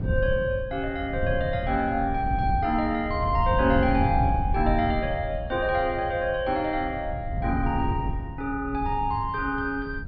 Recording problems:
treble cut off; nothing above 5.5 kHz
wind on the microphone; below 120 Hz, SNR 5 dB

